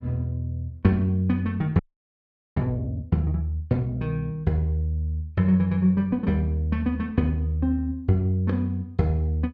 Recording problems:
audio freezing; at 2 s for 1 s

